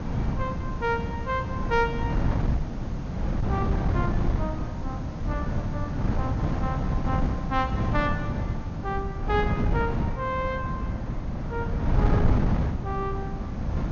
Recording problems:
treble cut off; nothing above 6.8 kHz
hiss; slope 0 dB per octave, SNR 24 dB
wind noise; below 200 Hz, SNR -4 dB

